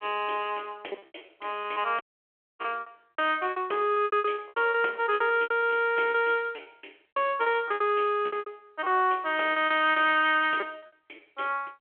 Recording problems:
telephone audio; 320 Hz to 3.3 kHz, G.726
packet loss; 17% of the sound replaced, filled with repeated pitch periods
audio cutting out; at 2 s for 0.5 s

